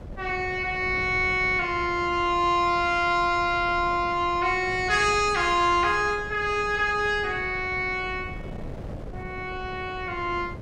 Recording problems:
wind on the microphone; below 310 Hz, SNR 16 dB

